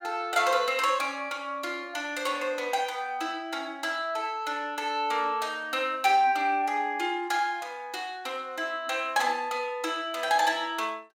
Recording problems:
none

